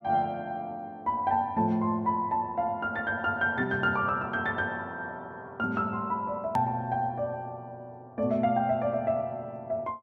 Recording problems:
hard cut with a click; at 6.5 s

